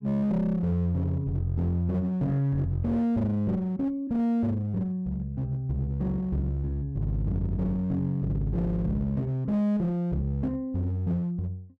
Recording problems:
distorted audio; hard clipping, uneven, signal-to-distortion ratio 10 dB

